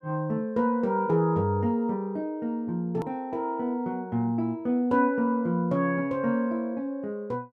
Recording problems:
hard cut with a click; at 3 s

